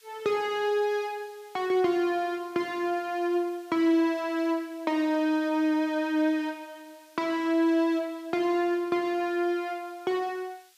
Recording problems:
background hiss; slope +5 dB per octave, SNR 29 dB

